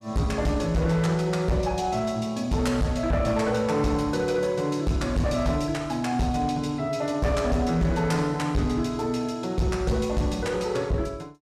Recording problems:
distortion; hard clipping, signal-to-distortion ratio 11 dB

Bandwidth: 14.5 kHz